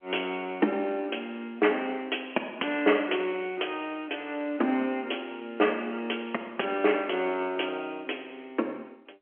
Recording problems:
phone line; 240 Hz to 3.2 kHz, G.711

